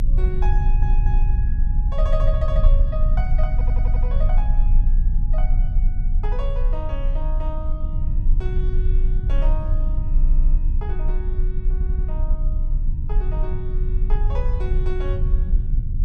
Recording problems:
low-frequency rumble; below 46 Hz, strongest tone 28 Hz, SNR -12 dB
audio stuttering; 4 times, first at 0.5 s

